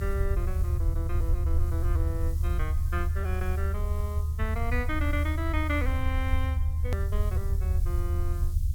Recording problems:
background hiss; slope +6 dB per octave, SNR 16 dB
low-frequency rumble; below 78 Hz, SNR -7 dB
hard cut with a click; at 7 s

